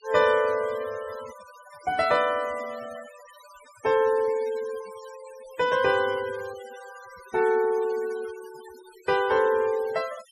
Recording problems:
noise reduction artefacts; signal-to-artefact ratio 20 dB

